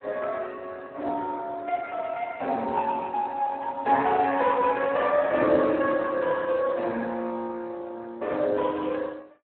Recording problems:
telephone audio; 220 Hz to 3.6 kHz, Speex

